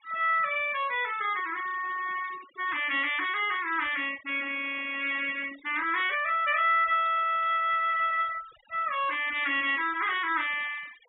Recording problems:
low-pass filter; nothing above 3.7 kHz
denoising artefacts; signal-to-artefact ratio 19 dB

